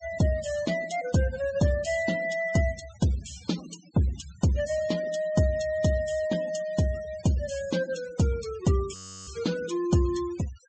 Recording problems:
treble cut off; nothing above 8 kHz
noise reduction artefacts; signal-to-artefact ratio 16 dB
frozen audio; at 9 s

